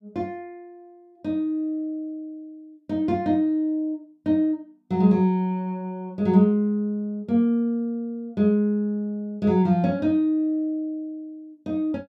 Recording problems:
none

